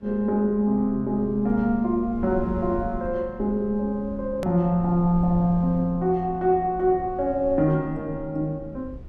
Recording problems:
rumble; below 110 Hz, SNR 16 dB
click at an edit; at 4.5 s

